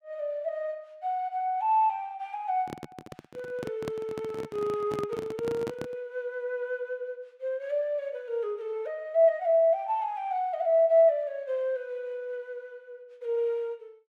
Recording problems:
handling noise; from 2.5 to 6 s; peak -3 dB vs average level

